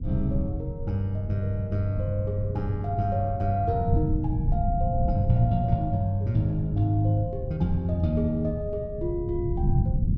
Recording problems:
rumble; below 140 Hz, SNR 4 dB

